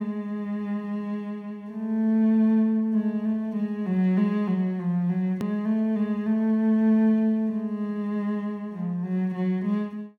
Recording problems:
hard cut with a click; at 5.5 s

